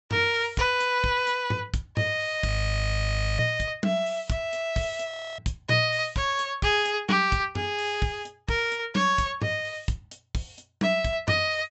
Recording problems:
low-pass filter; nothing above 7.9 kHz
audio freezing; at 2.5 s for 1 s and at 5 s

